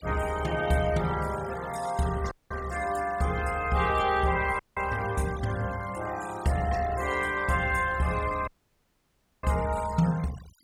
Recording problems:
noise reduction artefacts; signal-to-artefact ratio 16 dB
dropout; at 2.5 s, at 4.5 s and at 8.5 s for 1 s

